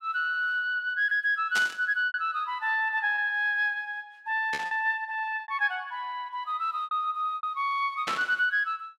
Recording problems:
packet loss; 6% of the sound replaced, filled with repeated pitch periods
static burst; at 1.5 s, at 4.5 s and at 8 s; peak 0 dB vs average level

